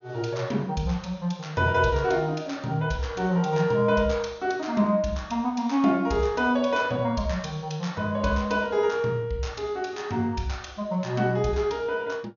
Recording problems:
treble cut off; nothing above 6.8 kHz

